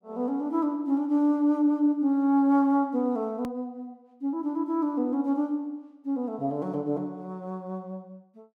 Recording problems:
edit click; at 3.5 s

